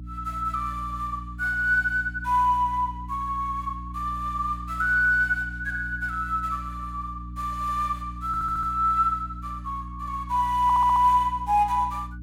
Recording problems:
electrical hum; 60 Hz, harmonics up to 300 Hz, SNR 13 dB
audio stuttering; at 8.5 s and at 11 s

